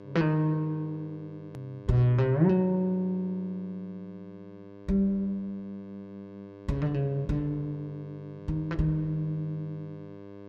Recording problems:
hum; 50 Hz, harmonics up to 2.2 kHz, SNR 17 dB
edit click; at 1.5 s

